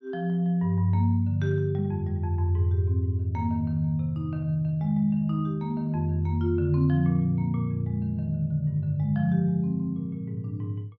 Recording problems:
treble missing; nothing above 8 kHz

